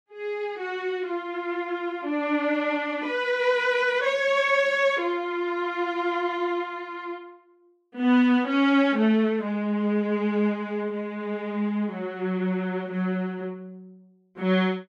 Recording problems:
none

